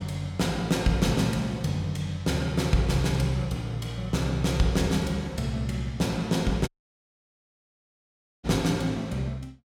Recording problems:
dropout; at 6.5 s for 2 s

